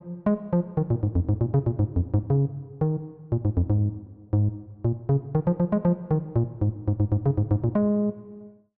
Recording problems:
none

